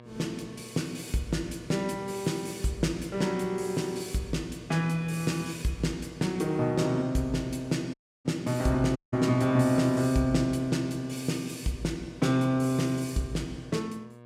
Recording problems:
hum; 60 Hz, harmonics up to 2.3 kHz, SNR 21 dB
dropout; at 8 s and at 9 s

